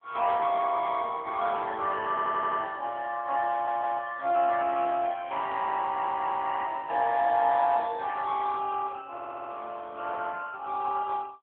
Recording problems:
telephone audio; 320 Hz to 3.5 kHz, AMR-NB
stutter; 4 times, first at 2 s

